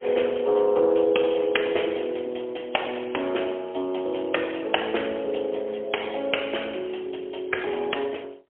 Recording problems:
phone line; 320 Hz to 3.3 kHz, AMR-NB, then MP3

